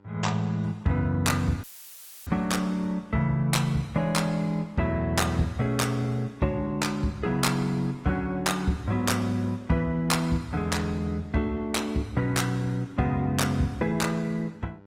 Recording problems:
lossy compression; Opus, log-spectral distance 2 dB, nothing above 18.3 kHz
electrical hum; 50 Hz, harmonics up to 1.9 kHz, SNR 28 dB
audio cutting out; at 1.5 s for 0.5 s; filled with static

